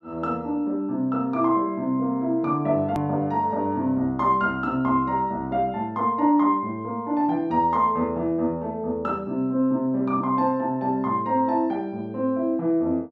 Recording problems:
edit click; at 3 s

